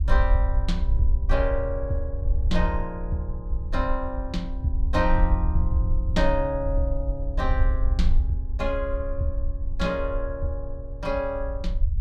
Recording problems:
low-frequency rumble; below 64 Hz, SNR -1 dB

